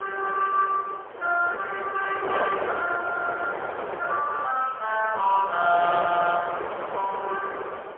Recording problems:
telephone audio; 340 Hz to 2.9 kHz, AMR-NB, then MP3
wind noise; below 1.1 kHz, SNR 7 dB

